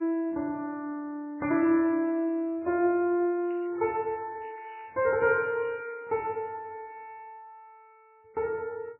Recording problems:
codec artefacts; MP3, log-spectral distance 2 dB, nothing above 2.4 kHz
crackle; from 3.5 to 6 s; loose cable, SNR 29 dB

